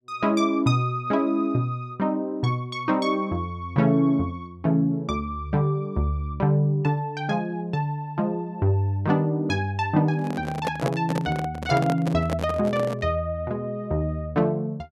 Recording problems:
microphone handling noise; from 10 to 13 s; peak +2 dB vs average level

